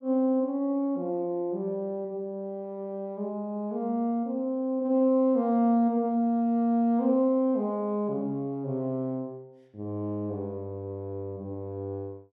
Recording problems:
none

